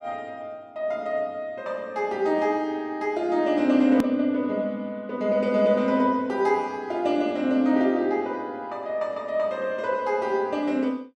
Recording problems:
click at an edit; at 4 s

